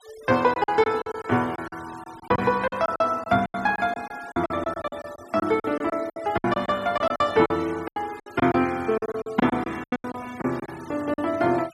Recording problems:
denoising artefacts; signal-to-artefact ratio 21 dB
packet loss; 15% of the sound replaced, filled with silence

